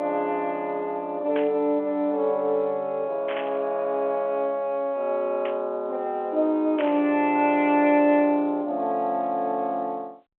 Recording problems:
telephone audio; 220 Hz to 3.5 kHz, G.711
burst of static; 4 times, first at 1.5 s; peak -5 dB vs average level

